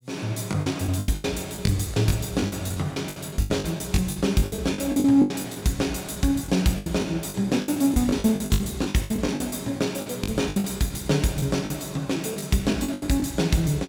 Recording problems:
packet loss; 17% of the sound replaced, filled with the last packet

